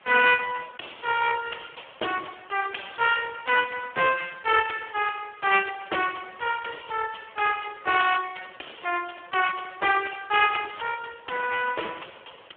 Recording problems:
telephone audio; 340 Hz to 3.3 kHz, Speex
background hiss; SNR 27 dB

